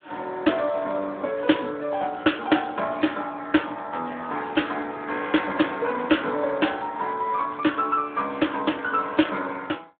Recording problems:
telephone audio; 220 Hz to 3.6 kHz, Speex

